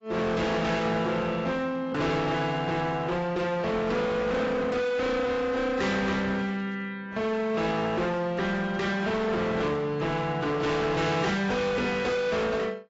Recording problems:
codec artefacts; AAC, log-spectral distance 3 dB, nothing above 7.6 kHz
distortion; hard clipping, signal-to-distortion ratio 7 dB

